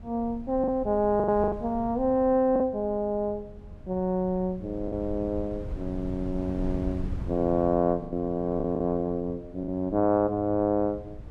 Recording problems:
wind on the microphone; below 120 Hz, SNR 14 dB
packet loss; 4% of the sound replaced, filled with the last packet

